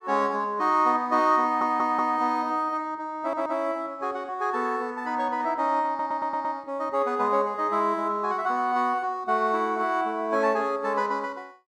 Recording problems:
audio stuttering; at 1.5 s, at 3 s and at 6 s

